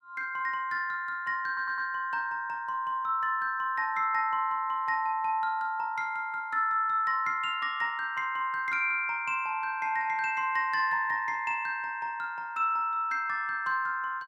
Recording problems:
audio stuttering; at 1.5 s

